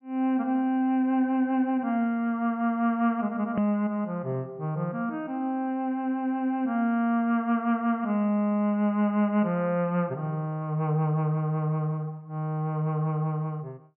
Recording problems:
low-pass filter; nothing above 3.1 kHz
hard cut with a click; at 3.5 s

